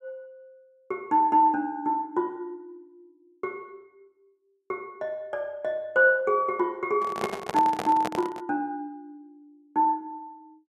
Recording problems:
handling noise; from 7 to 8.5 s; peak 0 dB vs average level

